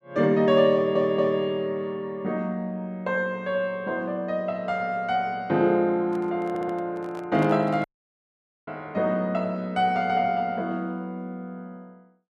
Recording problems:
audio stuttering; at 0.5 s and at 6.5 s
microphone handling noise; from 6 to 8 s; peak -9 dB vs average level
audio cutting out; at 8 s for 1 s

